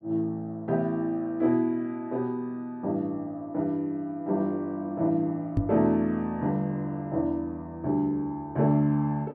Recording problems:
microphone bump; at 5.5 s; peak +7 dB vs average level

